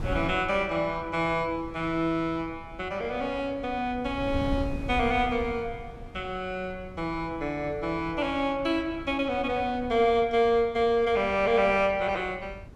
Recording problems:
wind noise; below 160 Hz, SNR 15 dB

